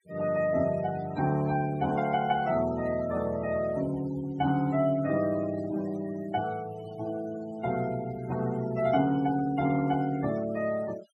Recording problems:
denoising artefacts; signal-to-artefact ratio 18 dB

